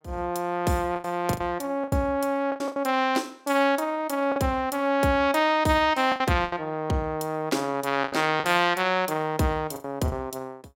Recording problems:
lost packets; 8% of the sound replaced, filled with the last packet

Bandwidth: 16.5 kHz